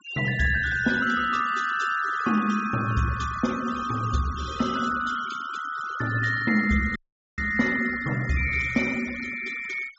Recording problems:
treble cut off; nothing above 8 kHz
denoising artefacts; signal-to-artefact ratio 16 dB
audio cutting out; at 7 s

